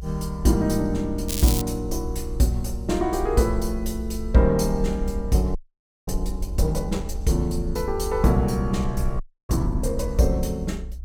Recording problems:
low-frequency rumble; below 62 Hz, SNR 8 dB
crackling; at 1.5 s; loose cable, SNR 4 dB
frozen audio; at 5.5 s for 0.5 s and at 9 s

